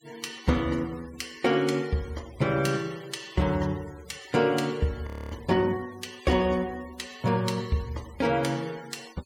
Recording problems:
noise reduction artefacts; signal-to-artefact ratio 21 dB
frozen audio; at 5 s

